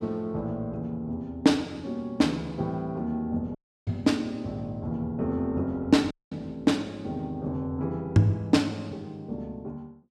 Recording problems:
dropout; at 3.5 s and at 6 s

